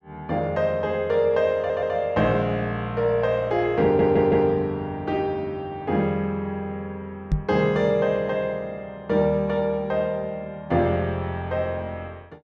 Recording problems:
audio stuttering; at 1.5 s and at 4 s
microphone bump; at 7.5 s; peak +4 dB vs average level

